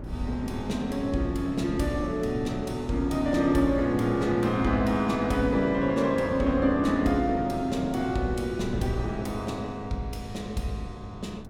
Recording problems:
wind noise; below 280 Hz, SNR 13 dB

